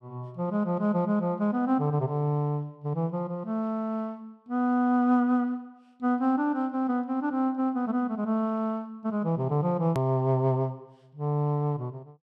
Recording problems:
edit click; at 10 s

